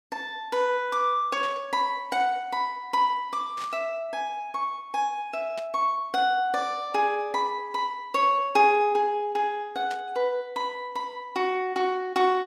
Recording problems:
static burst; 4 times, first at 1.5 s; peak -10 dB vs average level

